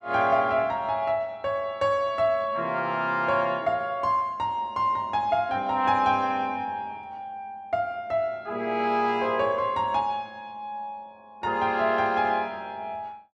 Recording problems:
none

